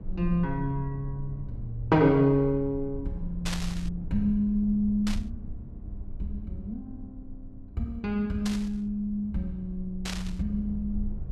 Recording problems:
hum; 50 Hz, harmonics up to 700 Hz, SNR 22 dB
low-frequency rumble; below 68 Hz, SNR 12 dB
burst of static; 4 times, first at 3.5 s; peak -1 dB vs average level

